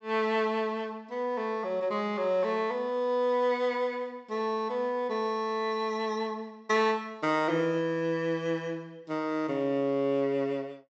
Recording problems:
treble cut off; nothing above 8 kHz

